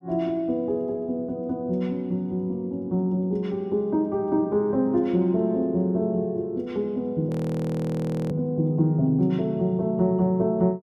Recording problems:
audio freezing; at 7.5 s for 1 s

